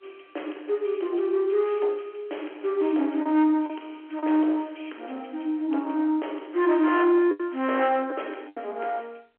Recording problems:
phone line; 280 Hz to 3.3 kHz, G.711
distorted audio; soft clipping, signal-to-distortion ratio 12 dB
lost packets; 3% of the sound replaced, filled with the last packet

